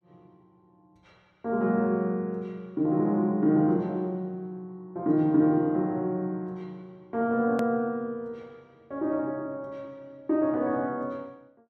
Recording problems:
edit click; at 7.5 s

